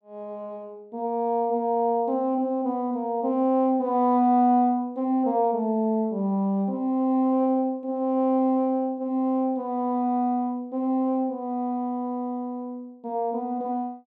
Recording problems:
none

